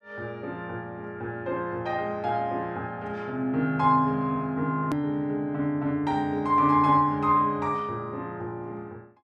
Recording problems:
edit click; at 5 s

